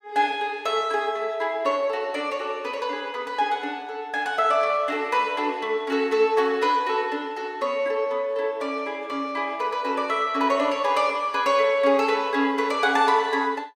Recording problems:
none

